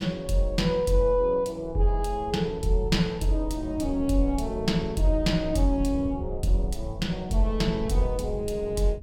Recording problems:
low-frequency rumble; below 110 Hz, SNR 12 dB

